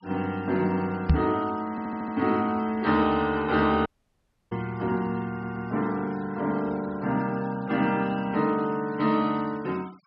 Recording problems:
treble missing; nothing above 5.4 kHz
noise reduction artefacts; signal-to-artefact ratio 24 dB
microphone thump; at 1 s; peak +9 dB vs average level
stutter; at 1.5 s and at 5.5 s
audio cutting out; at 4 s for 0.5 s

